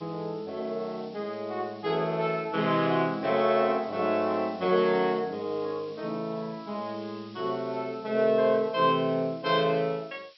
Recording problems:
treble cut off; nothing above 5.6 kHz
background hiss; SNR 25 dB

